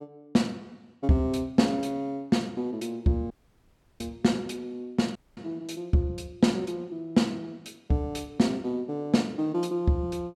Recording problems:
dropout; at 3.5 s for 0.5 s and at 5 s

